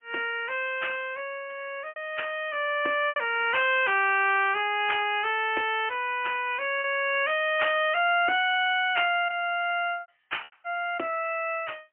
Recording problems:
phone line; 260 Hz to 3.1 kHz, AMR-NB, then MP3
packet loss; 2% of the sound replaced, filled with repeated pitch periods

